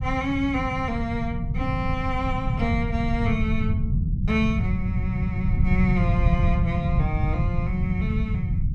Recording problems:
rumble; below 140 Hz, SNR -2 dB

